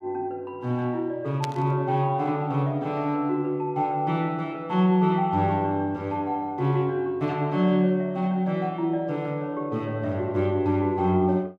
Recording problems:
static burst; at 1.5 s; peak -4 dB vs average level

